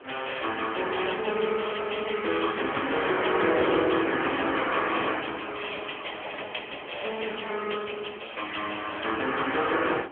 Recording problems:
telephone audio; 240 Hz to 3.2 kHz, AMR-NB
background hiss; SNR 18 dB

